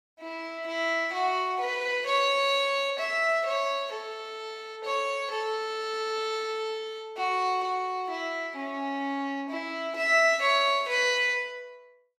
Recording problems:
none

